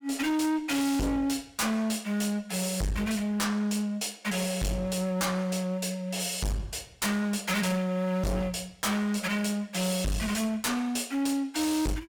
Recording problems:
distortion; hard clipping, uneven, signal-to-distortion ratio 6 dB

